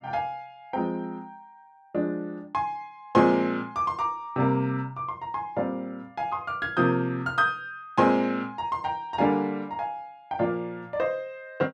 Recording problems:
none

